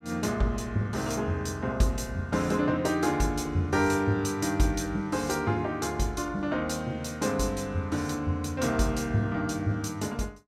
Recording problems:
none

